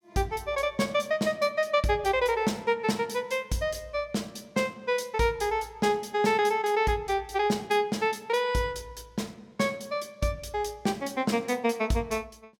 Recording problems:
none

